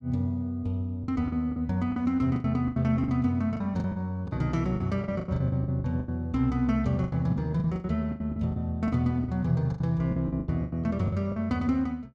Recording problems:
packet loss; 15% of the sound replaced, filled with the last packet

